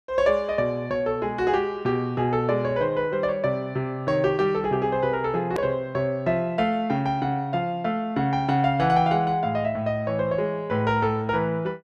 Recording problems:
edit click; at 5.5 s

